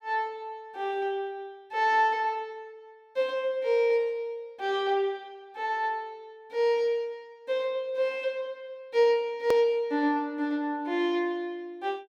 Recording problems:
click at an edit; at 9.5 s

